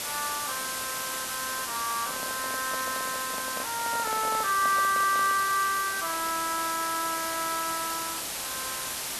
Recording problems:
background hiss; slope 0 dB per octave, SNR 3 dB
microphone handling noise; from 2 to 5.5 s; peak -6 dB vs average level

